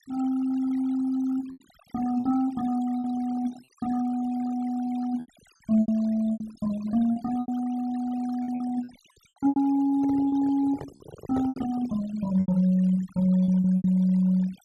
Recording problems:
denoising artefacts; signal-to-artefact ratio 22 dB
packet loss; 8% of the sound replaced, filled with repeated pitch periods
microphone handling noise; from 10 to 12 s; peak -5 dB vs average level

